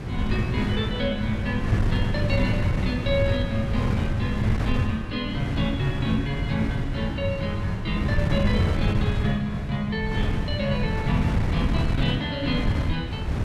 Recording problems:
wind noise; below 160 Hz, SNR -1 dB

